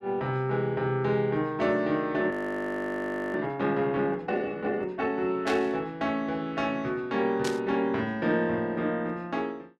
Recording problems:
audio freezing; at 2.5 s for 1 s
static burst; at 5.5 s and at 7.5 s; peak -2 dB vs average level

